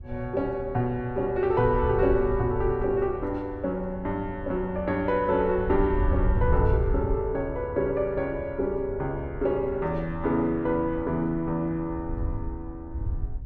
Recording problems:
wind on the microphone; below 90 Hz, SNR 8 dB

